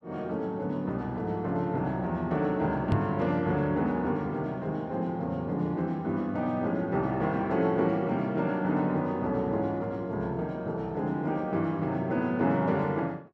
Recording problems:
microphone bump; at 3 s; peak +6 dB vs average level

